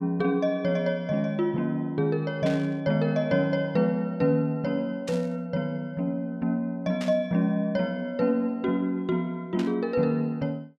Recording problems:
static burst; 4 times, first at 2.5 s; peak -8 dB vs average level

